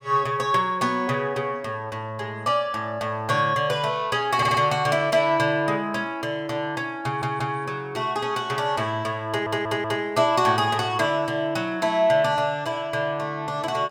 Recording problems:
audio stuttering; at 4.5 s, at 7 s and at 9.5 s

